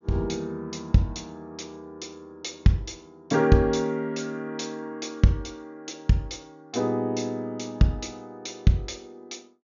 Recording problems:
low-pass filter; nothing above 7 kHz

